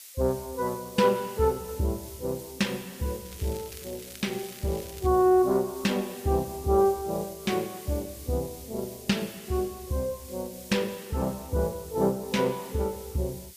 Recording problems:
codec artefacts; Opus, log-spectral distance 2 dB, nothing above 15.1 kHz
background hiss; SNR 16 dB
crackling; from 3.5 to 5 s; loose cable, SNR 19 dB

